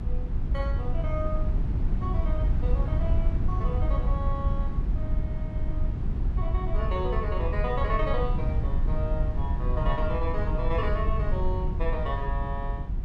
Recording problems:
low-frequency rumble; below 82 Hz, SNR -5 dB

